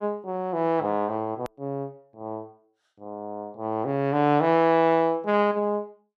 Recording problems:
hard cut with a click; at 1.5 s

